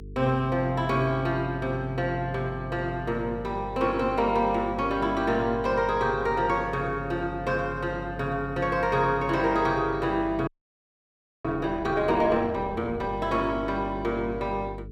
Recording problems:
hum; 50 Hz, harmonics up to 450 Hz, SNR 14 dB
frozen audio; at 10 s for 1 s

